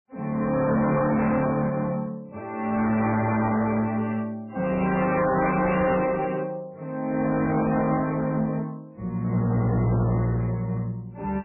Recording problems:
codec artefacts; MP3, log-spectral distance 3 dB, nothing above 2.4 kHz
distortion; hard clipping, uneven, signal-to-distortion ratio 7 dB

